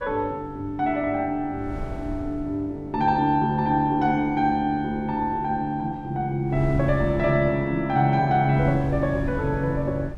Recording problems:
wind on the microphone; below 100 Hz, SNR 15 dB

